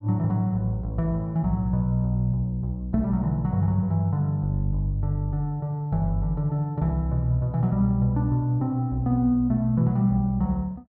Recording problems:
none

